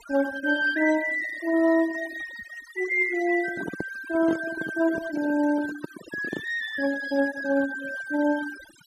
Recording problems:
noise reduction artefacts; signal-to-artefact ratio 17 dB
handling noise; from 3.5 to 6.5 s; peak -2 dB vs average level

